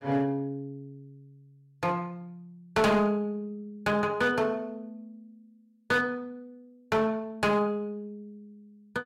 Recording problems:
distortion; hard clipping, uneven, signal-to-distortion ratio 11 dB

